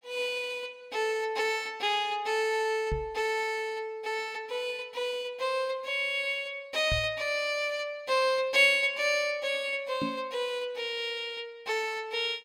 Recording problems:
microphone thump; at 3 s, at 7 s and at 10 s; peak 0 dB vs average level

